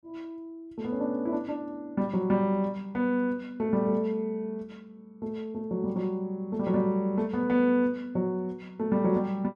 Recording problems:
none

